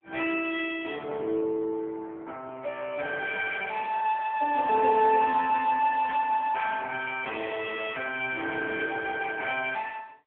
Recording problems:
telephone audio; 370 Hz to 2.3 kHz, AMR-NB
static burst; at 6 s; peak -9 dB vs average level

